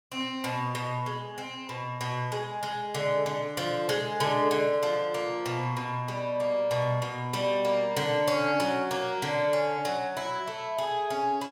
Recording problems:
none

